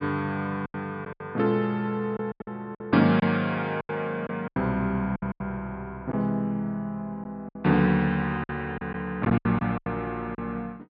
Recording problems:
low-pass filter; nothing above 5.5 kHz
lost packets; 10% of the sound replaced, filled with silence

